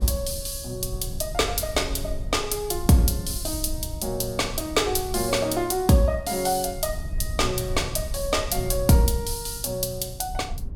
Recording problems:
low-frequency rumble; below 80 Hz, SNR 11 dB

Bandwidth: 17 kHz